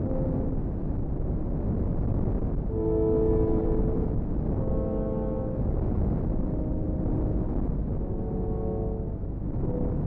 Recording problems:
electrical hum; 50 Hz, harmonics up to 350 Hz, SNR 6 dB
wind noise; below 270 Hz, SNR -2 dB

